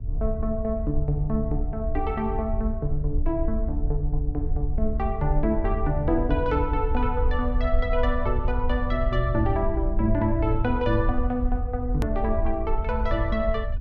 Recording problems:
rumble; below 62 Hz, SNR 2 dB
click at an edit; at 12 s

